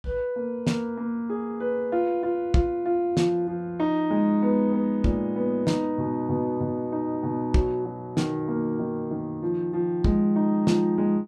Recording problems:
none

